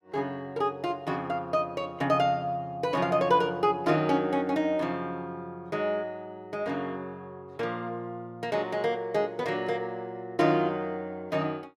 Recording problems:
none

